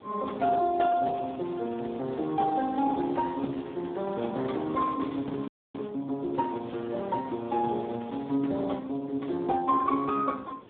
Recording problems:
phone line; 190 Hz to 2 kHz, Speex
wind on the microphone; below 610 Hz, SNR 20 dB
crackle; from 1 to 6 s and from 6.5 to 8.5 s; loose cable, SNR 27 dB
audio freezing; at 5.5 s

